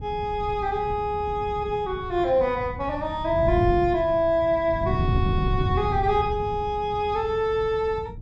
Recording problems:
wind on the microphone; below 150 Hz, SNR 7 dB

